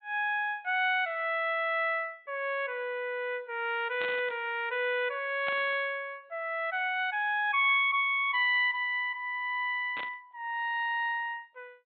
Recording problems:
treble cut off; nothing above 4 kHz
static burst; at 4 s, at 5.5 s and at 10 s; peak -5 dB vs average level

